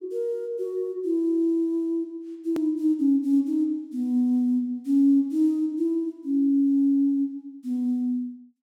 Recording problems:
hard cut with a click; at 2.5 s

